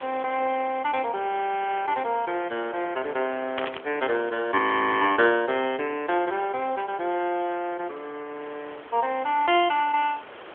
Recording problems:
phone line; 300 Hz to 3.3 kHz, AMR-NB
hiss; SNR 19 dB
burst of static; at 3.5 s; peak -3 dB vs average level
frozen audio; at 4.5 s

